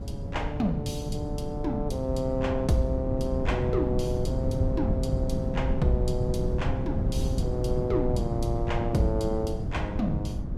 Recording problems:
wind on the microphone; below 160 Hz, SNR 1 dB

